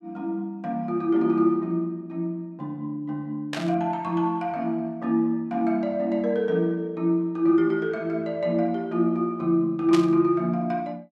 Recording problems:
burst of static; at 3.5 s and at 10 s; peak -2 dB vs average level

